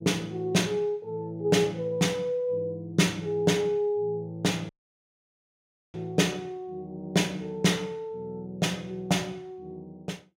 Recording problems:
audio cutting out; at 4.5 s for 1.5 s

